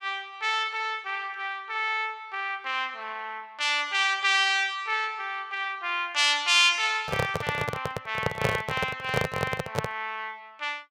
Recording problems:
microphone handling noise; from 7 to 10 s; peak +5 dB vs average level

